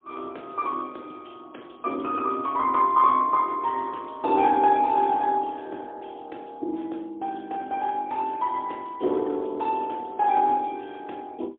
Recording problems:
phone line; 260 Hz to 3.6 kHz, AMR-NB, then MP3

